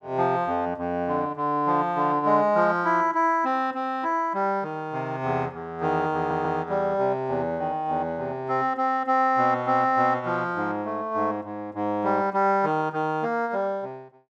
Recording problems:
stutter; at 6 s

